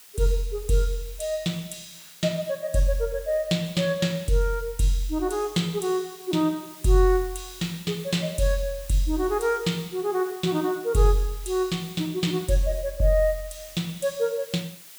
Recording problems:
background hiss; slope +2 dB per octave, SNR 18 dB

